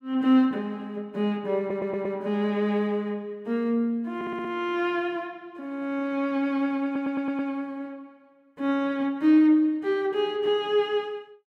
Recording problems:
stutter; at 1.5 s, at 4 s and at 7 s

